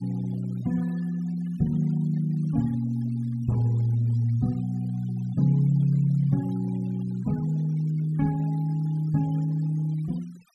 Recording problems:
denoising artefacts; signal-to-artefact ratio 25 dB

